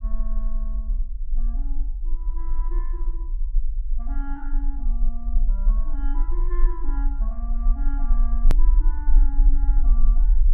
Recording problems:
low-frequency rumble; below 38 Hz, strongest tone 20 Hz, SNR -16 dB
edit click; at 8.5 s

